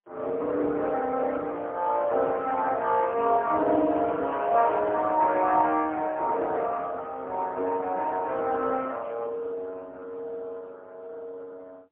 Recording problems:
phone line; 220 Hz to 3.5 kHz, AMR-NB, then MP3

